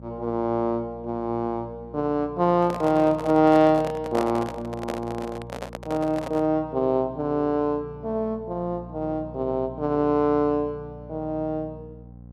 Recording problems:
hum; 60 Hz, harmonics up to 780 Hz, SNR 19 dB
microphone handling noise; from 2.5 to 6.5 s; peak -2 dB vs average level

